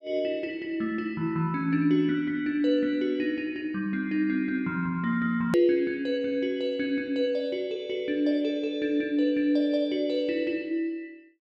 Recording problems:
hard cut with a click; at 5.5 s

